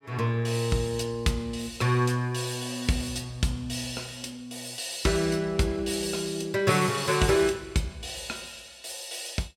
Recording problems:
none

